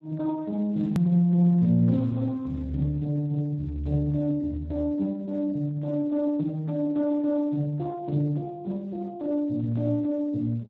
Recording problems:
codec artefacts; Speex, log-spectral distance 2 dB, nothing above 13.1 kHz
edit click; at 1 s

